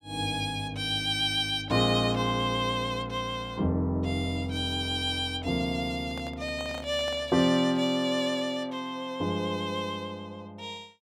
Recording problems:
handling noise; from 6 to 7.5 s; peak -10 dB vs average level

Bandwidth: 16 kHz